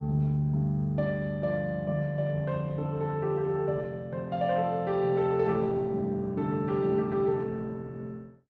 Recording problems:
lossy compression; Opus, log-spectral distance 2 dB

